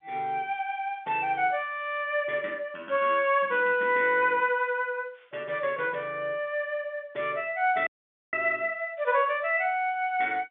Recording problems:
telephone audio; 280 Hz to 3.9 kHz, G.711
audio cutting out; at 8 s

